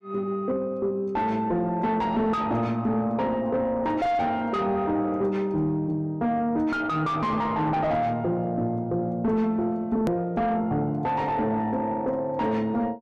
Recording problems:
distorted audio; soft clipping, signal-to-distortion ratio 8 dB
edit click; at 10 s

